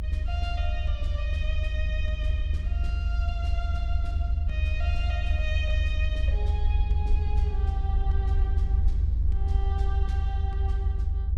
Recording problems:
low-frequency rumble; below 78 Hz, SNR -11 dB

